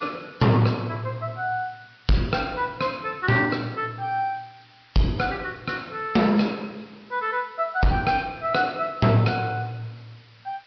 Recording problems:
treble missing; nothing above 5.2 kHz
codec artefacts; MP3, log-spectral distance 9 dB
distorted audio; hard clipping, uneven, signal-to-distortion ratio 12 dB
background hiss; SNR 28 dB

